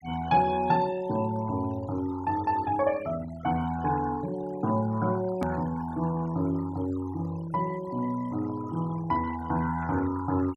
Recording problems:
denoising artefacts; signal-to-artefact ratio 18 dB
click at an edit; at 5.5 s

